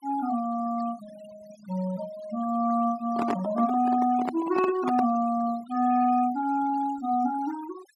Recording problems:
denoising artefacts; signal-to-artefact ratio 19 dB
handling noise; from 3 to 5 s; peak 0 dB vs average level

